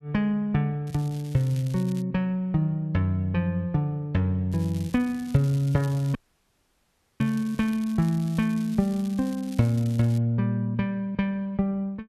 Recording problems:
crackle; from 1 to 2 s and from 4.5 to 10 s; loose cable, SNR 22 dB
audio cutting out; at 6 s for 1 s

